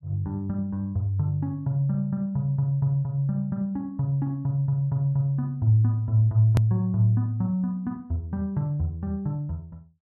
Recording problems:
hard cut with a click; at 6.5 s

